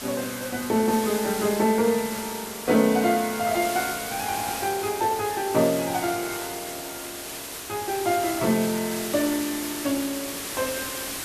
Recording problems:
hiss; slope -1 dB per octave, SNR 7 dB

